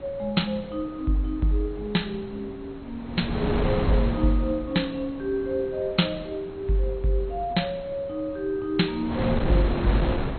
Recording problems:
codec artefacts; MP2, log-spectral distance 2 dB, nothing above 4.2 kHz
wind noise; below 550 Hz, SNR 4 dB

